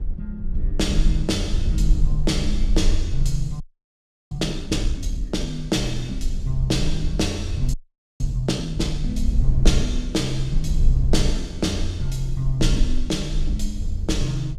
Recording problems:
rumble; below 50 Hz, SNR 1 dB
audio freezing; at 3.5 s for 0.5 s and at 7.5 s

